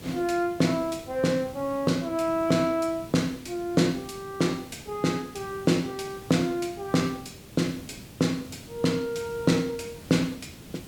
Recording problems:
hiss; SNR 17 dB

